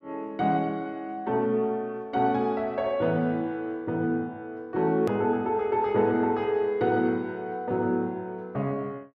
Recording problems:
hard cut with a click; at 5 s

